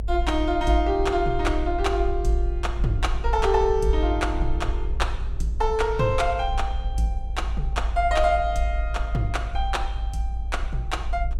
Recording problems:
rumble; below 54 Hz, strongest tone 52 Hz, SNR 4 dB

